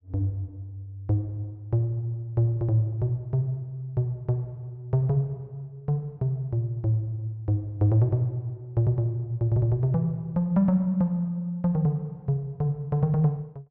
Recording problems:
none

